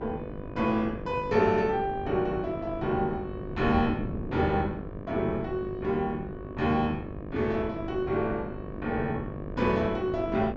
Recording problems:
treble cut off; nothing above 8 kHz
electrical hum; 50 Hz, harmonics up to 2.3 kHz, SNR 12 dB
wind noise; below 280 Hz, SNR 11 dB

